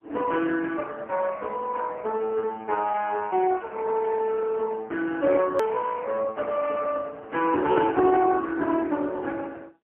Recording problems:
telephone audio; 280 Hz to 3.1 kHz, AMR-NB, then MP3
hard cut with a click; at 5.5 s

